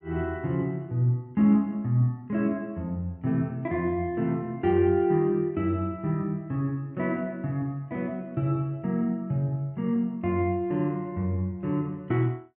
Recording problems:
none

